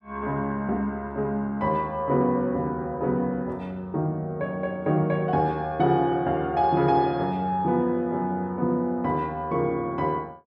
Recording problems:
none

